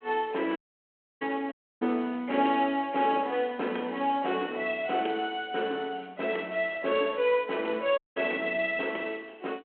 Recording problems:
phone line; 220 Hz to 3.3 kHz, G.726
audio cutting out; at 0.5 s for 0.5 s, at 1.5 s and at 8 s

